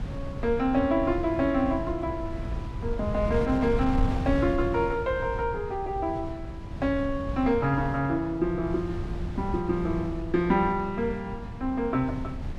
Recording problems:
wind noise; below 140 Hz, SNR 8 dB

